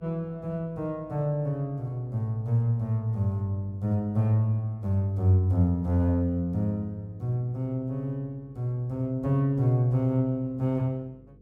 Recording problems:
hum; 50 Hz, harmonics up to 500 Hz, SNR 28 dB

